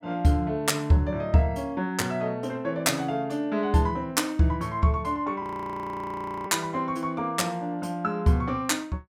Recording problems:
audio freezing; at 5.5 s for 1 s

